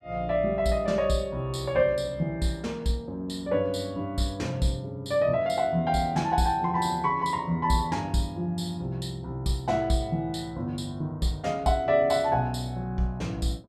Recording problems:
none

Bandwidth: 14.5 kHz